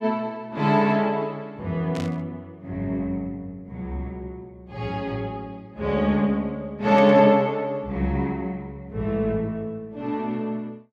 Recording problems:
burst of static; at 2 s and at 7 s; peak -8 dB vs average level

